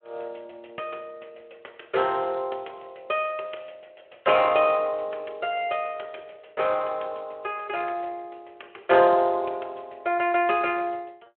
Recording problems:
telephone audio; 320 Hz to 3.4 kHz, Speex

